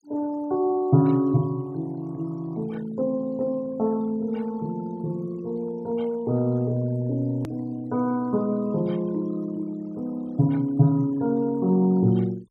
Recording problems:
denoising artefacts; signal-to-artefact ratio 27 dB
click at an edit; at 7.5 s

